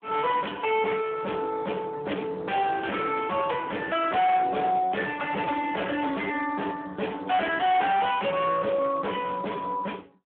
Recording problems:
phone line; 240 Hz to 3.4 kHz, Speex
distorted audio; hard clipping, signal-to-distortion ratio 7 dB

